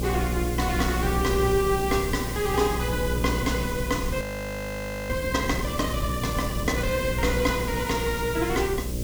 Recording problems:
hum; 60 Hz, harmonics up to 600 Hz, SNR 5 dB
hiss; slope +2 dB per octave, SNR 11 dB
wind noise; below 170 Hz, SNR 9 dB
frozen audio; at 4 s for 1 s

